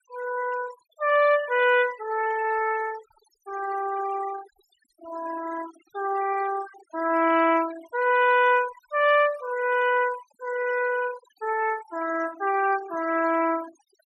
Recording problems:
denoising artefacts; signal-to-artefact ratio 16 dB

